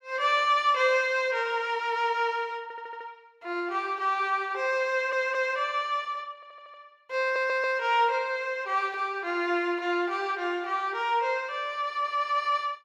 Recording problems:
stutter; 4 times, first at 2.5 s

